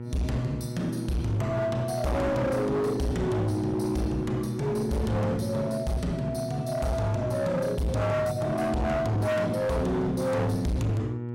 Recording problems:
distorted audio; hard clipping, signal-to-distortion ratio 7 dB
hum; 60 Hz, harmonics up to 960 Hz, SNR 9 dB

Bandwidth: 16 kHz